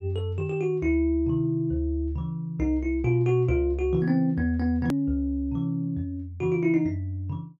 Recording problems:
edit click; at 5 s

